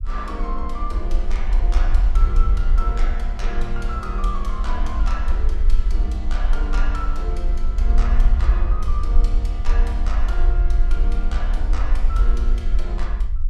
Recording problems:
low-frequency rumble; below 46 Hz, SNR -10 dB

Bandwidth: 14.5 kHz